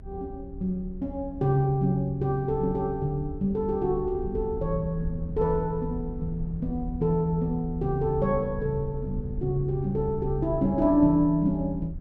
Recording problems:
low-frequency rumble; below 80 Hz, SNR 11 dB

